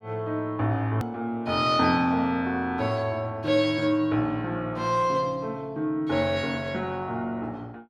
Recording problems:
edit click; at 1 s

